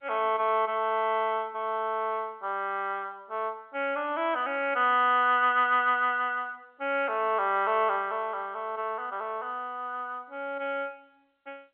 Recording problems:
phone line; 300 Hz to 3.5 kHz, G.711

